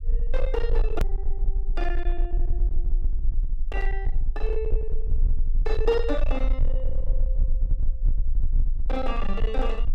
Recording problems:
distorted audio; hard clipping, uneven, signal-to-distortion ratio 10 dB
low-frequency rumble; below 36 Hz, strongest tone 20 Hz, SNR -3 dB
click at an edit; at 1 s

